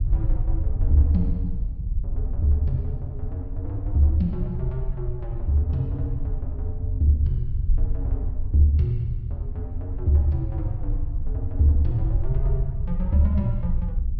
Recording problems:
treble cut off; nothing above 5.8 kHz
low-frequency rumble; below 66 Hz, SNR 4 dB

